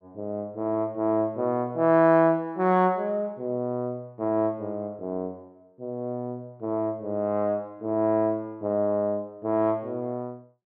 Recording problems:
none

